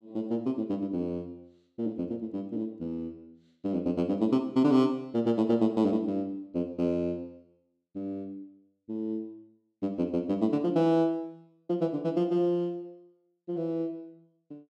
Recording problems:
none

